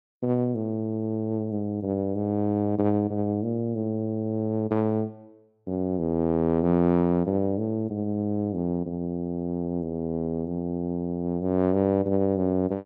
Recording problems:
none

